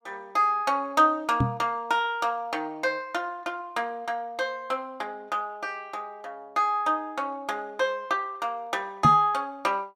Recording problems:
knock on the microphone; at 1.5 s and at 9 s; peak +6 dB vs average level

